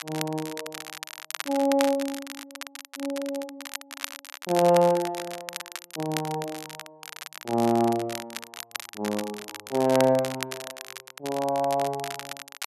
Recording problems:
crackle; vinyl, SNR 11 dB

